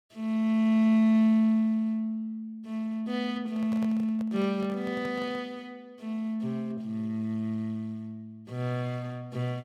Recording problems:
microphone handling noise; from 3.5 to 5.5 s; peak -9 dB vs average level

